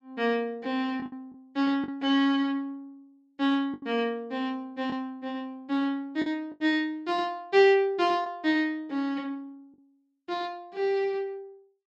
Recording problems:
packet loss; 4% of the sound replaced, filled with the last packet

